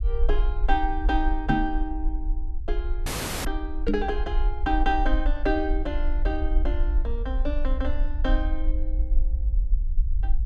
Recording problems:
low-frequency rumble; below 48 Hz, SNR -1 dB
microphone bump; at 1.5 s and at 4 s; peak +8 dB vs average level
audio cutting out; at 3 s

